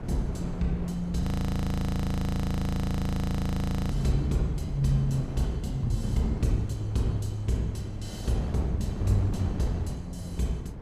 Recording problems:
wind on the microphone; below 240 Hz, SNR 9 dB
frozen audio; at 1 s for 2.5 s

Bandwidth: 14.5 kHz